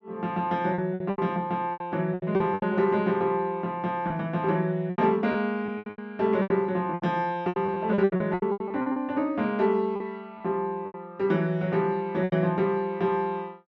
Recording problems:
packet loss; 12% of the sound replaced, filled with repeated pitch periods

